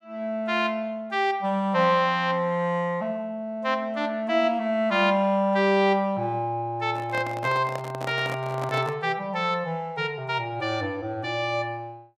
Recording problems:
handling noise; from 7 to 9 s; peak -5 dB vs average level

